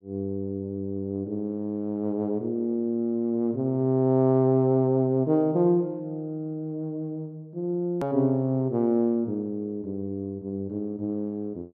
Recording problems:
click at an edit; at 8 s

